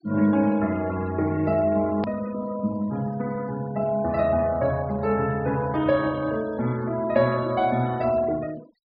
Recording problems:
treble missing; nothing above 5.5 kHz
noise reduction artefacts; signal-to-artefact ratio 20 dB
hard cut with a click; at 2 s

